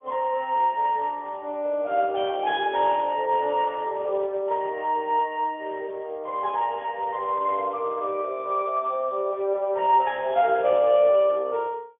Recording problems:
phone line; 320 Hz to 3.7 kHz, Speex

